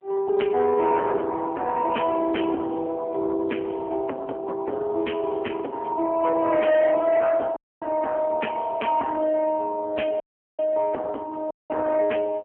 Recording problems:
phone line; 240 Hz to 2.9 kHz, AMR-NB
distorted audio; soft clipping, signal-to-distortion ratio 12 dB
dropout; at 7.5 s, at 10 s and at 12 s

